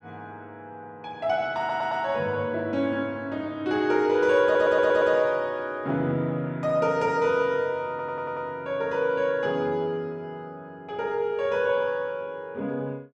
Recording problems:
stutter; at 1.5 s, at 4.5 s and at 8 s

